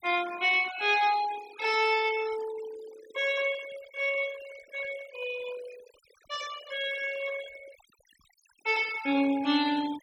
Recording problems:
noise reduction artefacts; signal-to-artefact ratio 16 dB

